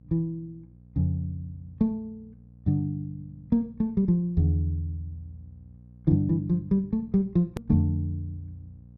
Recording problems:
hum; 60 Hz, harmonics up to 540 Hz, SNR 24 dB
edit click; at 7.5 s

